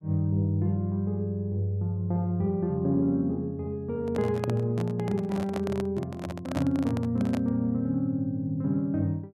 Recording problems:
microphone handling noise; from 4 to 7.5 s; peak -1 dB vs average level

